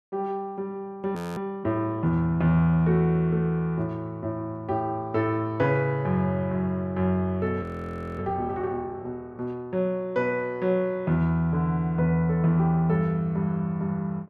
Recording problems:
audio freezing; at 1 s and at 7.5 s for 0.5 s

